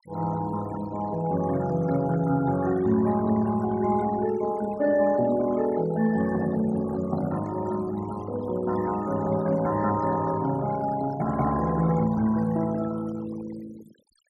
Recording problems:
denoising artefacts; signal-to-artefact ratio 16 dB

